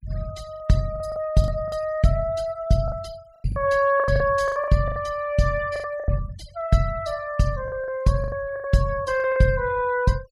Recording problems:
denoising artefacts; signal-to-artefact ratio 23 dB
lost packets; 12% of the sound replaced, filled with the last packet

